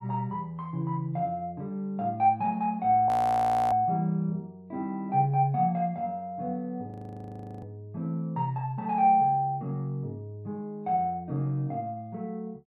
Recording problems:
audio freezing; at 3 s for 0.5 s and at 7 s for 0.5 s

